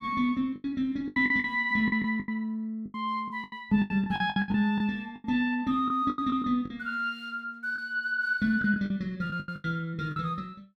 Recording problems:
lost packets; 14% of the sound replaced, filled with the last packet

